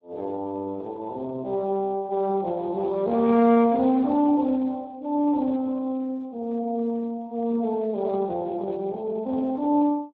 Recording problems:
lossy codec; Speex, log-spectral distance 2 dB

